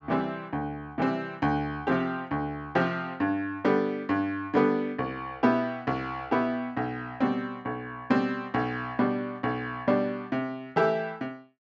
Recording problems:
low-pass filter; nothing above 8 kHz

